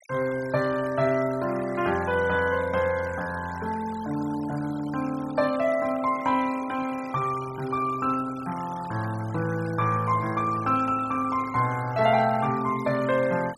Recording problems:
noise reduction artefacts; signal-to-artefact ratio 18 dB

